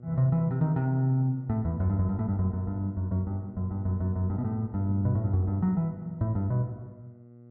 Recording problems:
electrical hum; 60 Hz, harmonics up to 720 Hz, SNR 19 dB

